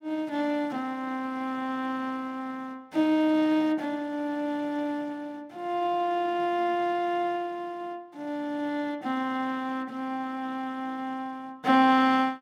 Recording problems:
none

